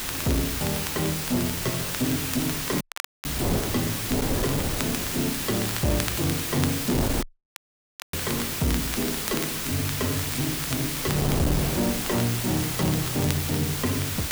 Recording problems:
distortion; soft clipping, signal-to-distortion ratio 9 dB
background hiss; slope 0 dB per octave, SNR 1 dB
wind noise; below 500 Hz, SNR 7 dB
crackle; vinyl, SNR 13 dB
dropout; at 3 s and at 7 s for 1 s

